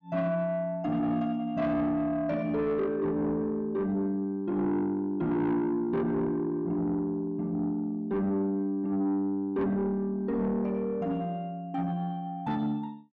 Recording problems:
distortion; soft clipping, signal-to-distortion ratio 11 dB

